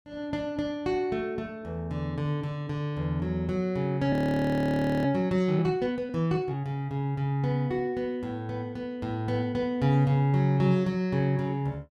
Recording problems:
audio freezing; at 4 s for 1 s

